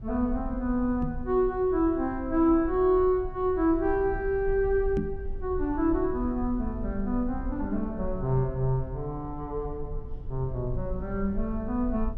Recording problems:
low-frequency rumble; below 60 Hz, SNR 11 dB
microphone bump; at 1 s and at 5 s; peak +1 dB vs average level

